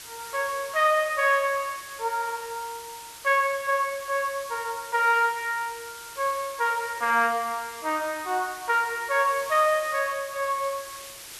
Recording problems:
background hiss; slope +1 dB per octave, SNR 15 dB

